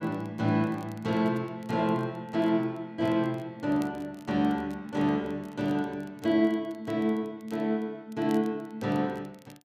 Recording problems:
crackle; vinyl, SNR 29 dB

